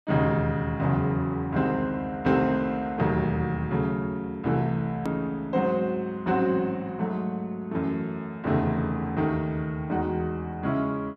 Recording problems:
hard cut with a click; at 5 s

